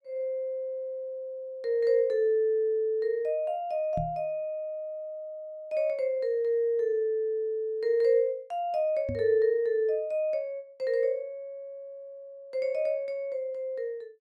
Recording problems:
microphone bump; at 4 s and at 9 s; peak -2 dB vs average level

